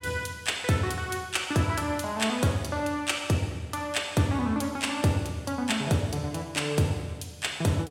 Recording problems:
none

